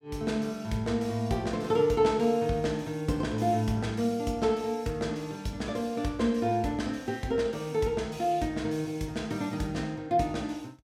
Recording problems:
none

